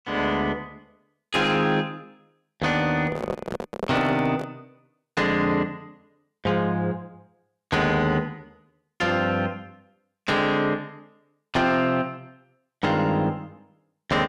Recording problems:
distortion; soft clipping, signal-to-distortion ratio 10 dB
handling noise; from 3 to 4.5 s; peak 0 dB vs average level

